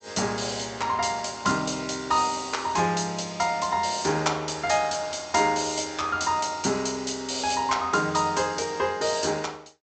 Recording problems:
treble cut off; nothing above 8 kHz

